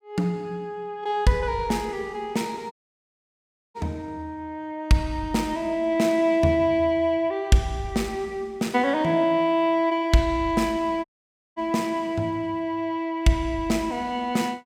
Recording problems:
audio cutting out; at 2.5 s for 1 s and at 11 s for 0.5 s

